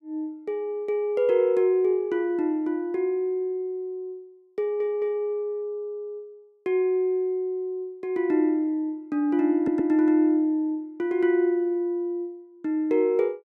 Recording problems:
stutter; at 4.5 s and at 9.5 s

